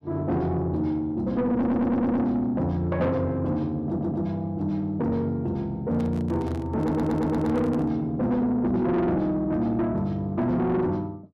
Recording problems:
distorted audio; soft clipping, signal-to-distortion ratio 10 dB
stutter; at 1.5 s, at 4 s and at 7 s
handling noise; from 6 to 8 s; peak -9 dB vs average level

